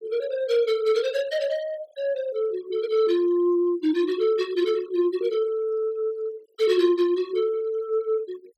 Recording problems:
denoising artefacts; signal-to-artefact ratio 22 dB

